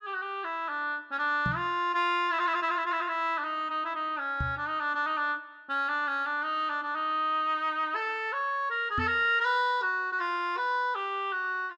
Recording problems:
microphone thump; at 1.5 s, at 4.5 s and at 9 s; peak -1 dB vs average level

